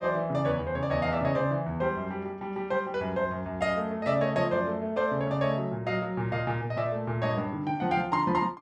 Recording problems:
none

